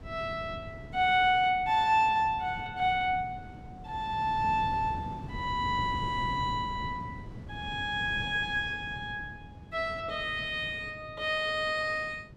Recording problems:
wind on the microphone; below 250 Hz, SNR 14 dB

